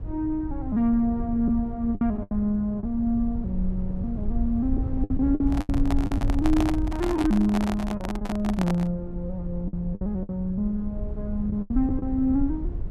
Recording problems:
low-frequency rumble; below 82 Hz, SNR 6 dB
lost packets; 7% of the sound replaced, filled with the last packet
microphone handling noise; from 5.5 to 9 s; peak +2 dB vs average level

